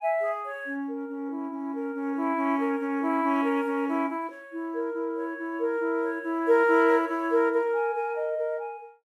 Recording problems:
none

